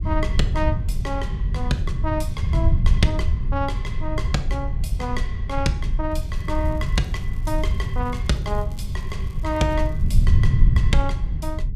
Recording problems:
rumble; below 92 Hz, SNR -3 dB
crackle; from 6 to 10 s; loose cable, SNR 26 dB

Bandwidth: 14.5 kHz